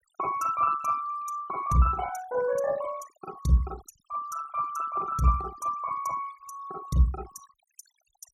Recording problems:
noise reduction artefacts; signal-to-artefact ratio 19 dB

